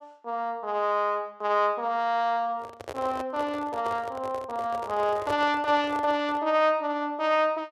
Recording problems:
handling noise; from 2.5 to 6.5 s; peak -3 dB vs average level

